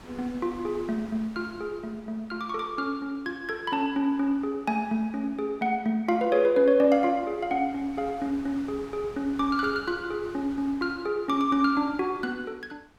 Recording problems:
wind on the microphone; below 1.6 kHz, SNR 23 dB

